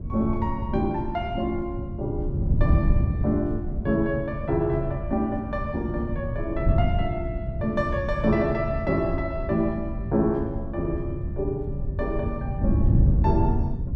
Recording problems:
wind on the microphone; below 130 Hz, SNR 1 dB

